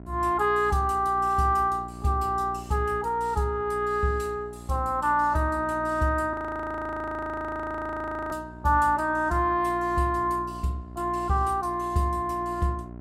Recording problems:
hum; 60 Hz, harmonics up to 1 kHz, SNR 16 dB
frozen audio; at 6.5 s for 2 s

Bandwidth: 16 kHz